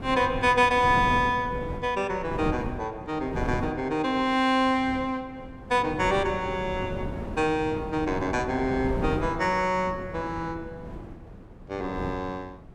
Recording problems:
wind noise; below 340 Hz, SNR 10 dB

